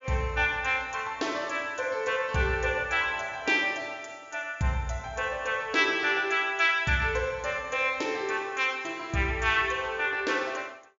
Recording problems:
treble cut off; nothing above 7.3 kHz

